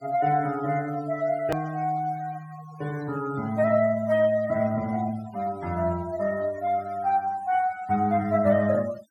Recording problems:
denoising artefacts; signal-to-artefact ratio 20 dB
click at an edit; at 1.5 s

